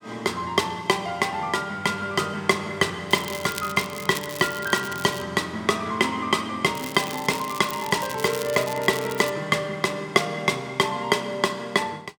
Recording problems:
crackle; from 3 to 5 s and from 7 to 9.5 s; loose cable, SNR 12 dB

